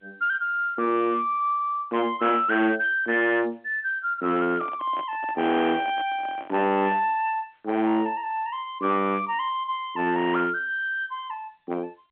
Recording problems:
phone line; 730 Hz to 3.5 kHz, G.711
distorted audio; hard clipping, uneven, signal-to-distortion ratio 6 dB
handling noise; from 4.5 to 7 s; peak -9 dB vs average level

